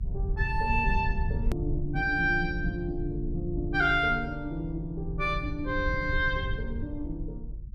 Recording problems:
rumble; below 84 Hz, SNR 6 dB
click at an edit; at 1.5 s

